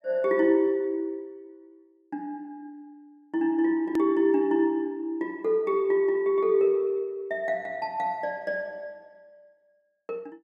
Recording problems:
click at an edit; at 4 s

